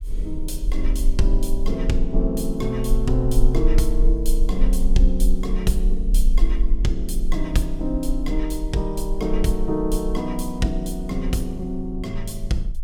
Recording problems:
low-frequency rumble; below 38 Hz, strongest tone 24 Hz, SNR 0 dB

